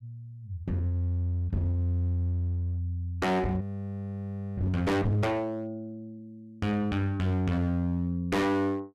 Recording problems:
distorted audio; hard clipping, uneven, signal-to-distortion ratio 5 dB
frozen audio; at 3.5 s for 1 s

